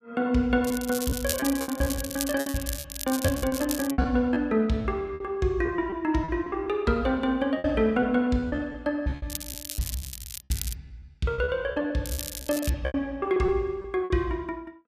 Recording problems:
lost packets; 13% of the sound replaced, filled with repeated pitch periods
crackle; from 0.5 to 4 s, from 9.5 to 11 s and at 12 s; loose cable, SNR 8 dB

